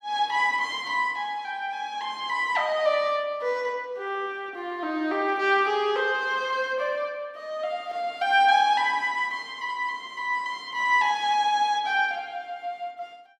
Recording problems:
none

